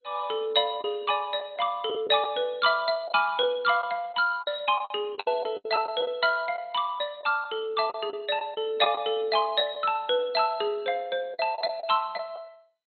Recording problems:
codec artefacts; MP2, log-spectral distance 3 dB, nothing above 3.6 kHz
lost packets; 8% of the sound replaced, filled with the last packet

